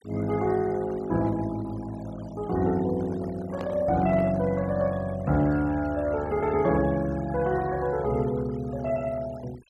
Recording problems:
noise reduction artefacts; signal-to-artefact ratio 20 dB
microphone handling noise; from 3 to 4.5 s; peak -5 dB vs average level

